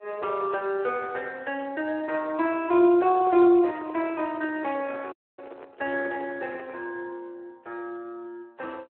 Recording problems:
phone line; 300 Hz to 3.3 kHz, Speex
microphone handling noise; from 3 to 7 s; peak -9 dB vs average level
dropout; at 5 s

